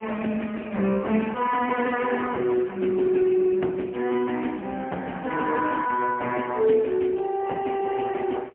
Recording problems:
telephone audio; 170 Hz to 3.1 kHz, AMR-NB, then MP3

